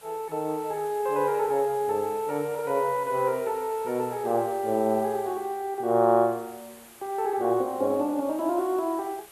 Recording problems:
hiss; SNR 21 dB

